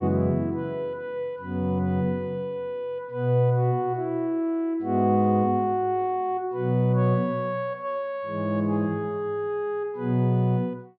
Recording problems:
treble missing; nothing above 5.5 kHz

